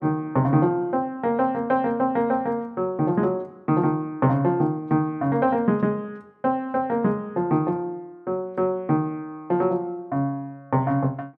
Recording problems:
none

